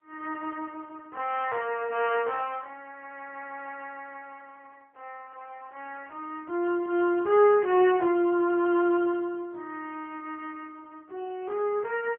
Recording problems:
telephone audio; 320 Hz to 3.1 kHz, AMR-NB

